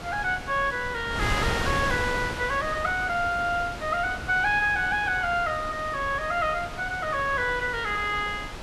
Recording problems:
wind on the microphone; below 1.8 kHz, SNR 8 dB

